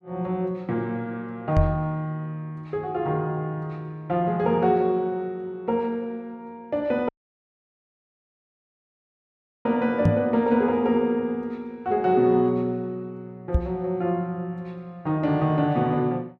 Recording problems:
knock on the microphone; at 1.5 s, at 10 s and at 14 s; peak +9 dB vs average level
dropout; at 7 s for 2.5 s

